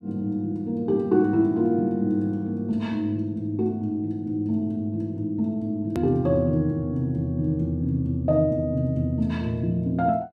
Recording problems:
edit click; at 6 s

